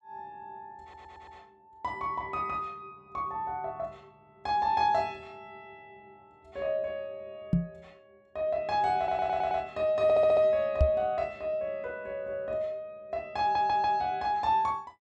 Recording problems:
stutter; 4 times, first at 1 s
microphone bump; at 7.5 s and at 11 s; peak +8 dB vs average level

